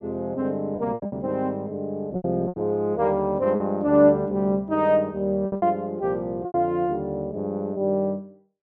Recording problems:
packet loss; 7% of the sound replaced, filled with repeated pitch periods

